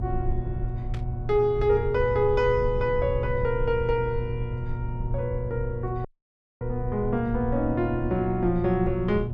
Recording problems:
hum; 60 Hz, harmonics up to 720 Hz, SNR 8 dB
rumble; below 84 Hz, SNR 9 dB
static burst; at 1 s; peak -13 dB vs average level
dropout; at 6 s for 0.5 s

